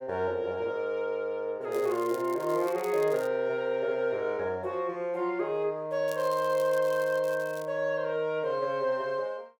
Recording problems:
crackling; from 1.5 to 3.5 s and from 6 to 7.5 s; loose cable, SNR 20 dB

